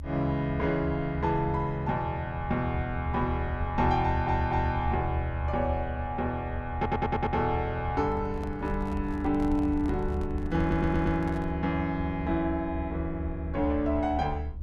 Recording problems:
rumble; below 76 Hz, strongest tone 72 Hz, SNR 7 dB
stutter; at 4 s, at 7 s and at 11 s
microphone handling noise; from 8 to 12 s; peak -11 dB vs average level

